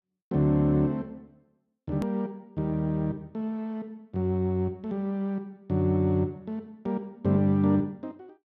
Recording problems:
hard cut with a click; at 2 s

